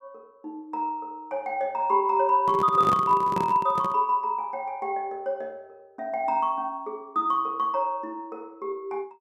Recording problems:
handling noise; from 2.5 to 4 s; peak -1 dB vs average level

